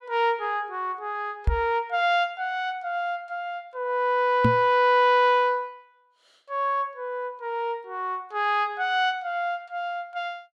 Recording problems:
knock on the microphone; at 1.5 s and at 4.5 s; peak +6 dB vs average level

